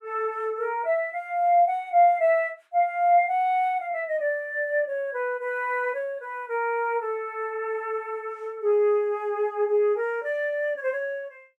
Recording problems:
none

